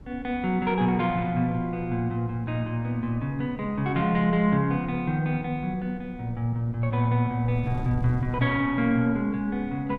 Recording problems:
wind on the microphone; below 140 Hz, SNR 17 dB

